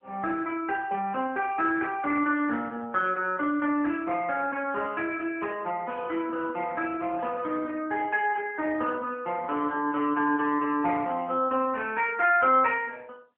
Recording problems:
phone line; 240 Hz to 3.1 kHz, AMR-NB

